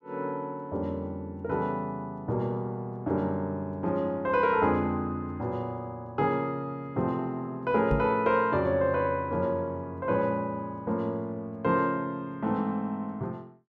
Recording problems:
microphone thump; at 8 s; peak +4 dB vs average level

